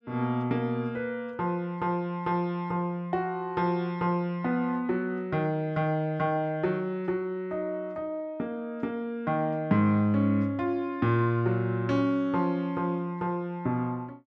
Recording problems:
none

